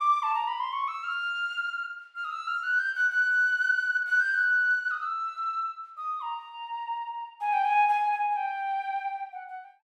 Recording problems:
none

